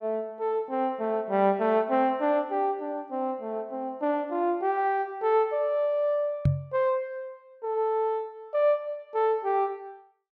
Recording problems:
microphone bump; at 6.5 s; peak +7 dB vs average level

